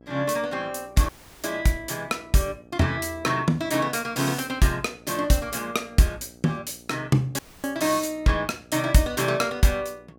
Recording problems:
hum; 60 Hz, harmonics up to 900 Hz, SNR 26 dB
dropout; at 1 s and at 7.5 s

